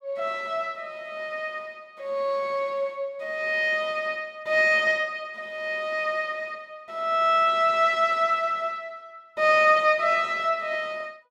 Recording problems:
none

